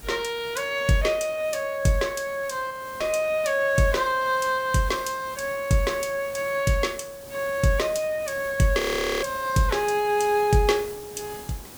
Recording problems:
background hiss; SNR 18 dB
audio freezing; at 2.5 s and at 9 s

